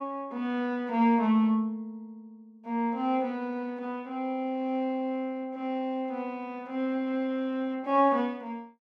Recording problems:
none

